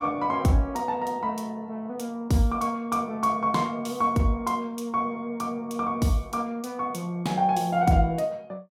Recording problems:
none

